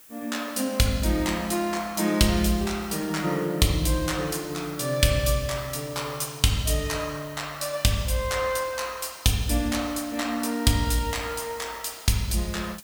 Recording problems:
hiss; slope -1 dB per octave, SNR 20 dB

